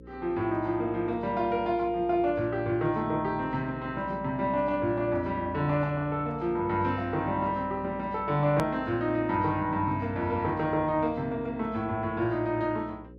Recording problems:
hum; 60 Hz, harmonics up to 540 Hz, SNR 18 dB
click at an edit; at 8.5 s

